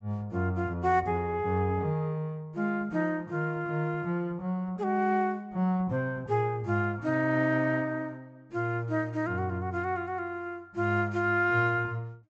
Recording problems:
treble cut off; nothing above 8 kHz

